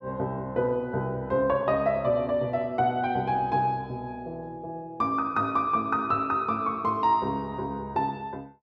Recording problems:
none

